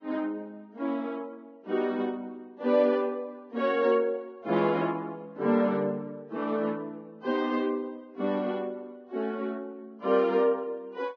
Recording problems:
codec artefacts; Vorbis, log-spectral distance 2 dB

